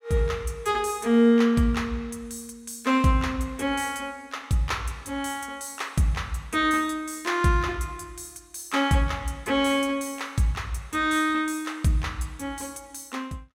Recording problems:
none

